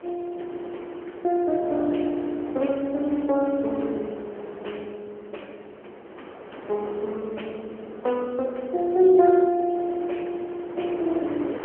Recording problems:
telephone audio; 280 Hz to 3.4 kHz, AMR-NB
wind on the microphone; below 770 Hz, SNR 14 dB

